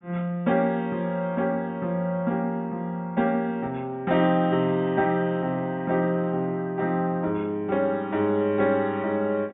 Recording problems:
treble missing; nothing above 4 kHz

